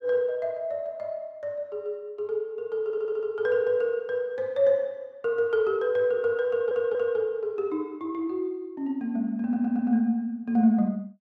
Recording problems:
stutter; at 3 s, at 6.5 s and at 9.5 s

